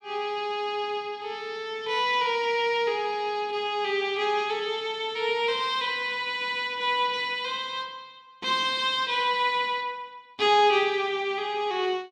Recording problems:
none

